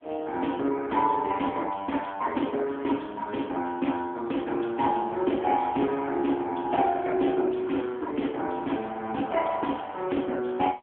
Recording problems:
phone line; 240 Hz to 3.4 kHz, AMR-NB

